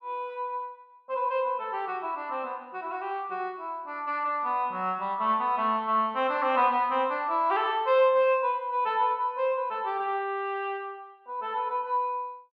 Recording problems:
none

